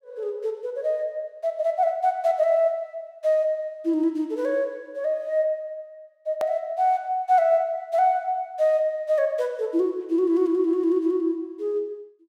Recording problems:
edit click; at 6.5 s

